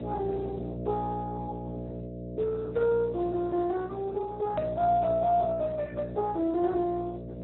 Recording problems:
low-pass filter; nothing above 3.9 kHz
lossy codec; Speex, log-spectral distance 2 dB
hum; 60 Hz, harmonics up to 660 Hz, SNR 9 dB
click at an edit; at 4.5 s

